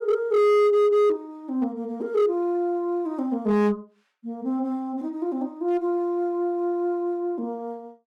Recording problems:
distortion; hard clipping, signal-to-distortion ratio 10 dB

